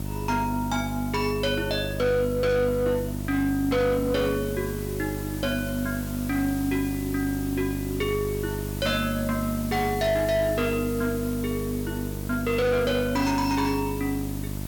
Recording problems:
distortion; hard clipping, signal-to-distortion ratio 10 dB
hum; 50 Hz, harmonics up to 950 Hz, SNR 6 dB
background hiss; SNR 14 dB

